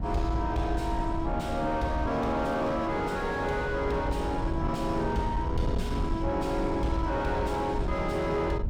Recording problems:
distorted audio; soft clipping, signal-to-distortion ratio 6 dB
rumble; below 120 Hz, SNR 5 dB

